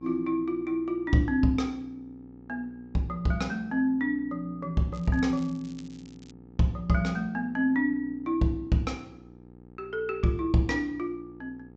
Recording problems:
treble cut off; nothing above 8 kHz
electrical hum; 60 Hz, harmonics up to 1.3 kHz, SNR 22 dB
crackle; from 5 to 6.5 s; loose cable, SNR 27 dB

